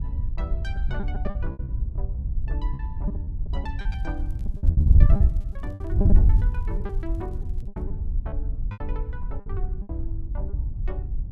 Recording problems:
wind on the microphone; below 80 Hz, SNR -14 dB
lost packets; 13% of the sound replaced, filled with repeated pitch periods
crackling; from 4 to 8 s; loose cable, SNR 24 dB

